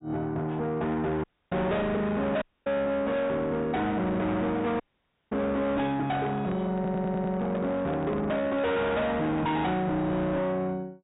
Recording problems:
treble missing; nothing above 4 kHz
distortion; soft clipping, signal-to-distortion ratio 7 dB
dropout; at 1 s, at 2.5 s and at 5 s for 0.5 s
handling noise; from 6 to 9.5 s; peak -4 dB vs average level
audio stuttering; at 7 s

